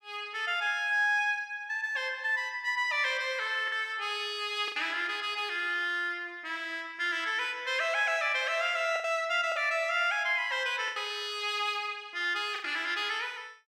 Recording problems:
lost packets; 3% of the sound replaced, filled with the last packet

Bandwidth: 14.5 kHz